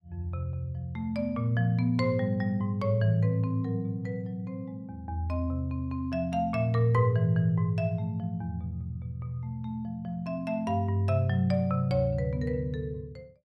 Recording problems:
none

